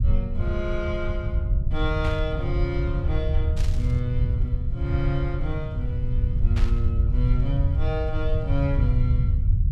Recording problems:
rumble; below 88 Hz, SNR -4 dB
burst of static; at 2 s, at 3.5 s and at 6.5 s; peak -3 dB vs average level

